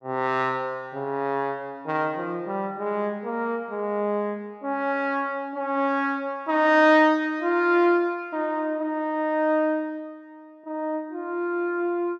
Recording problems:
none

